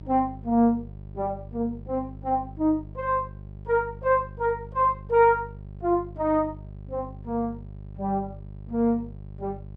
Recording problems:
hum; 50 Hz, harmonics up to 600 Hz, SNR 15 dB

